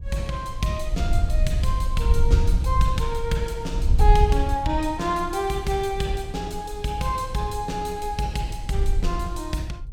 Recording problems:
wind noise; below 70 Hz, SNR -1 dB

